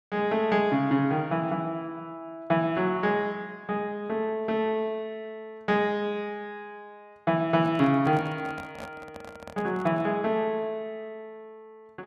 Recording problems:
microphone handling noise; from 7.5 to 10 s; peak -9 dB vs average level

